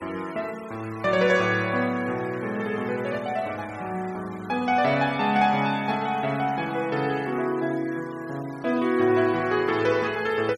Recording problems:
noise reduction artefacts; signal-to-artefact ratio 21 dB

